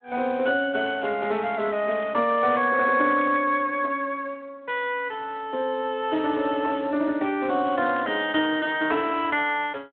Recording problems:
phone line; 220 Hz to 3.8 kHz, Speex
crackling; from 1 to 2.5 s, at 3 s and at 7.5 s; loose cable, SNR 25 dB

